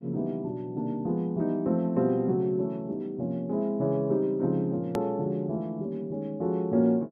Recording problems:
hard cut with a click; at 5 s

